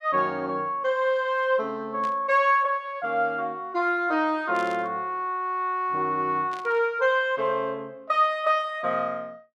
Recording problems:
static burst; at 2 s, at 4.5 s and at 6.5 s; peak -13 dB vs average level

